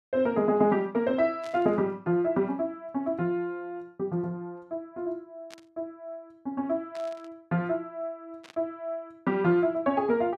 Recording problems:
burst of static; 4 times, first at 1.5 s; peak -13 dB vs average level

